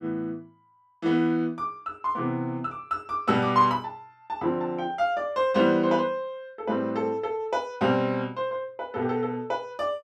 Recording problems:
none

